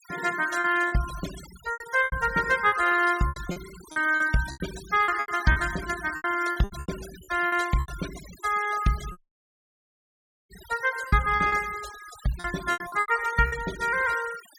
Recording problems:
noise reduction artefacts; signal-to-artefact ratio 15 dB
lost packets; 12% of the sound replaced, filled with repeated pitch periods
dropout; at 9 s for 1.5 s

